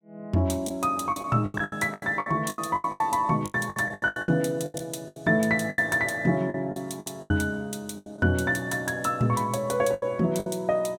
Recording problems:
packet loss; 16% of the sound replaced, filled with the last packet

